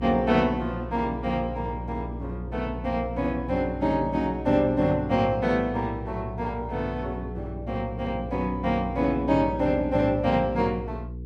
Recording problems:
hum; 60 Hz, harmonics up to 480 Hz, SNR 10 dB

